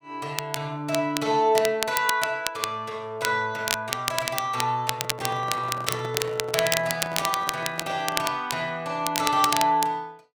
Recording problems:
crackling; vinyl, SNR 4 dB
handling noise; from 5 to 8.5 s; peak -7 dB vs average level

